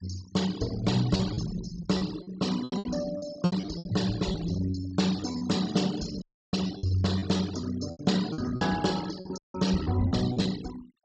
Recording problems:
treble cut off; nothing above 8 kHz
denoising artefacts; signal-to-artefact ratio 13 dB
lost packets; 12% of the sound replaced, filled with repeated pitch periods
dropout; at 6 s and at 9.5 s

